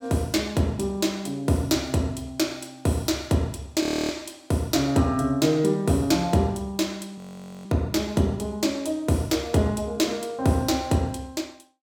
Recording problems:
frozen audio; at 4 s and at 7 s

